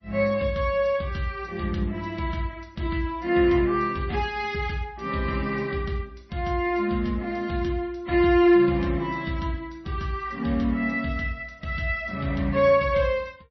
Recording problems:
codec artefacts; MP3, log-spectral distance 3 dB, nothing above 5.8 kHz

